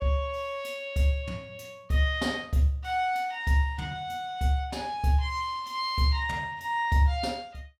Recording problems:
none

